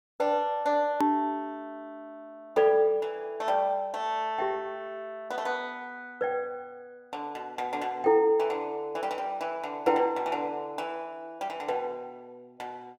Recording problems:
click at an edit; at 1 s

